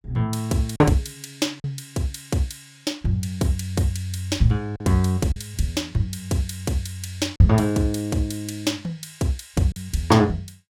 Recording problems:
lost packets; 2% of the sound replaced, filled with silence

